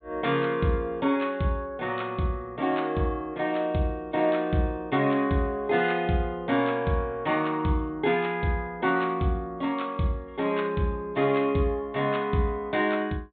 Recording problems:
treble cut off; nothing above 4 kHz

